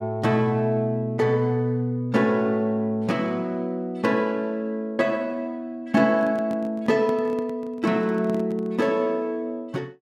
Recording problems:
handling noise; from 6 to 9 s; peak -6 dB vs average level

